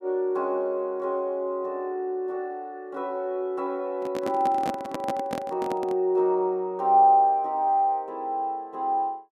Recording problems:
handling noise; from 4 to 6 s; peak -2 dB vs average level

